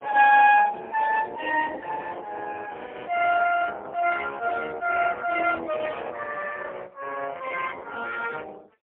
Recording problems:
telephone audio; 430 Hz to 2.5 kHz, AMR-NB, then MP3

